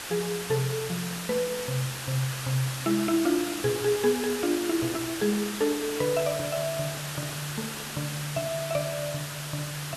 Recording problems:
background hiss; slope -1 dB per octave, SNR 5 dB
handling noise; from 4.5 to 8 s; peak -11 dB vs average level

